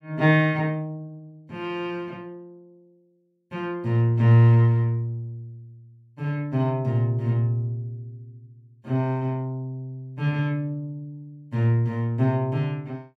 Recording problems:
none

